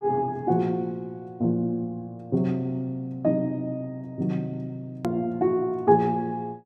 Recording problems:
edit click; at 5 s

